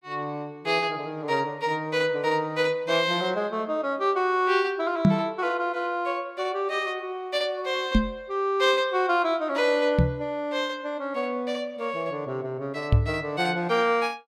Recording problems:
microphone thump; 4 times, first at 5 s; peak +10 dB vs average level

